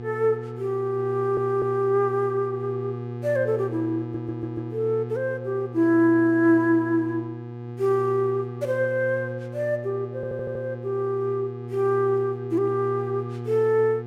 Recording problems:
electrical hum; 60 Hz, harmonics up to 840 Hz, SNR 10 dB
audio stuttering; at 1 s, at 4 s and at 10 s

